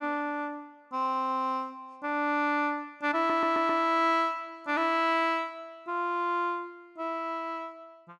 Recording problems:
audio stuttering; at 3 s

